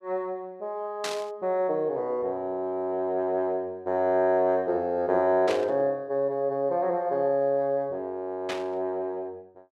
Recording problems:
burst of static; at 1 s, at 5.5 s and at 8.5 s; peak -1 dB vs average level

